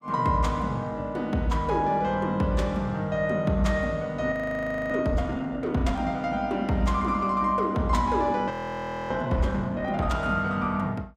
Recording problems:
audio freezing; at 4.5 s for 0.5 s and at 8.5 s for 0.5 s

